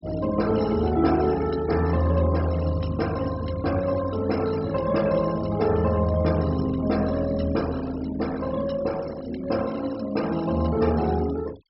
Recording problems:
treble cut off; nothing above 5.4 kHz
denoising artefacts; signal-to-artefact ratio 18 dB

